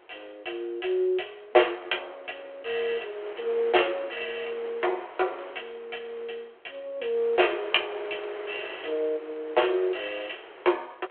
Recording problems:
telephone audio; 320 Hz to 3.3 kHz, G.726
wind on the microphone; below 1.7 kHz, SNR 15 dB

